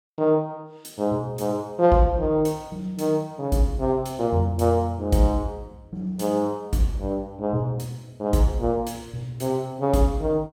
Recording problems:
none

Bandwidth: 18 kHz